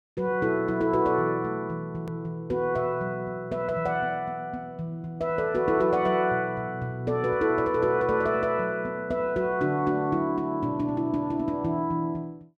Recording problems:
edit click; at 2 s

